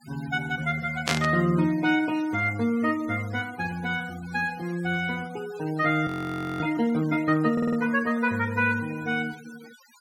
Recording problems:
denoising artefacts; signal-to-artefact ratio 20 dB
burst of static; at 1 s; peak +4 dB vs average level
audio freezing; at 6 s for 0.5 s
stutter; at 7.5 s

